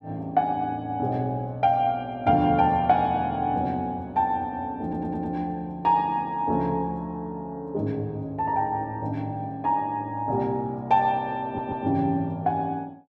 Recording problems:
stutter; at 5 s and at 11 s

